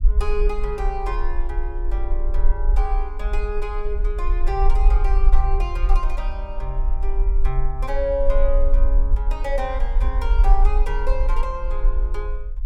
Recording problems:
rumble; below 42 Hz, SNR -6 dB

